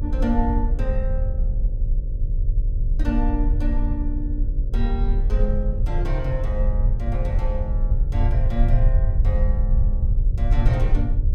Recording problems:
hum; 50 Hz, harmonics up to 600 Hz, SNR 12 dB
rumble; below 58 Hz, strongest tone 32 Hz, SNR -6 dB

